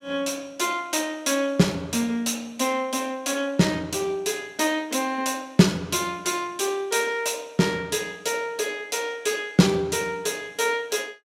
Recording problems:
none

